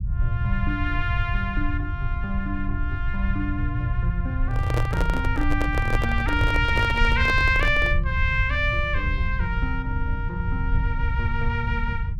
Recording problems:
rumble; below 86 Hz, SNR 1 dB
microphone handling noise; from 4.5 to 8 s; peak +1 dB vs average level

